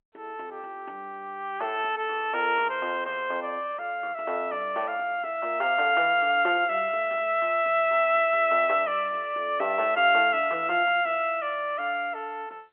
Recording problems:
telephone audio; 300 Hz to 3.3 kHz, G.711

